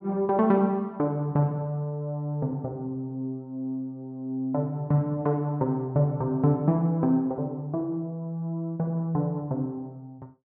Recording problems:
none

